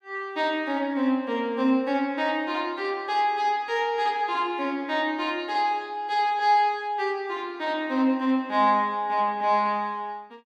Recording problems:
none

